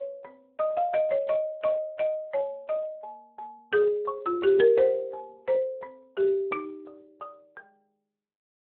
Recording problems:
phone line; 320 Hz to 3 kHz, Speex

